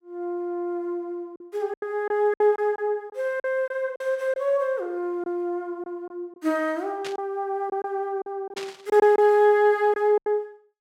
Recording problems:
lost packets; 7% of the sound replaced, filled with silence
static burst; at 7 s and at 8.5 s; peak -6 dB vs average level

